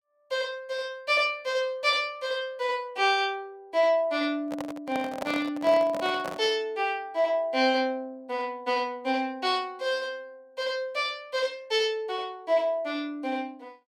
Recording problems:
handling noise; from 4.5 to 6.5 s; peak -2 dB vs average level

